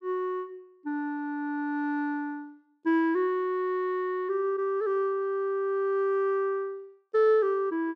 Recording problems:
none

